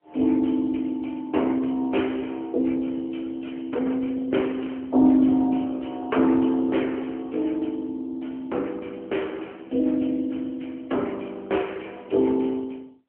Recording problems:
telephone audio; 220 Hz to 3.2 kHz, AMR-NB

